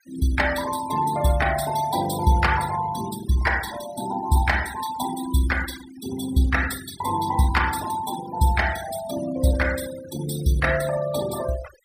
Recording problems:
denoising artefacts; signal-to-artefact ratio 13 dB

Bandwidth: 15.5 kHz